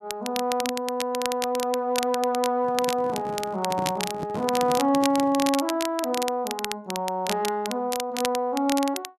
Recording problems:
crackling; vinyl, SNR 8 dB
handling noise; from 2.5 to 5.5 s; peak -3 dB vs average level

